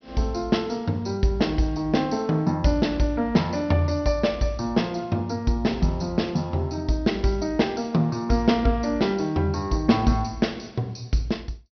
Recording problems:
treble missing; nothing above 6 kHz

